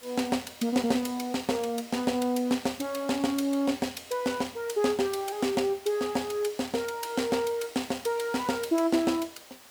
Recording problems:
background hiss; slope -1 dB per octave, SNR 20 dB

